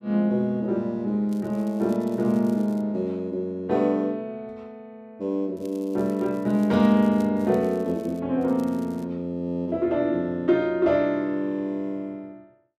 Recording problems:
crackling; from 1.5 to 3 s, from 5.5 to 8 s and at 8.5 s; loose cable, SNR 29 dB

